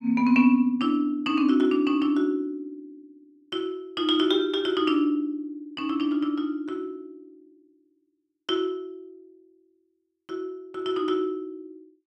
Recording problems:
none

